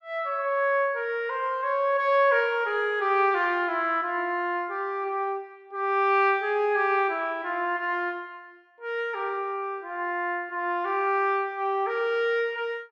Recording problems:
none

